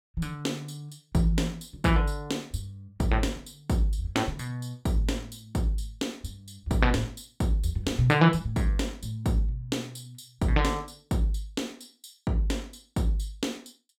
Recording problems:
none

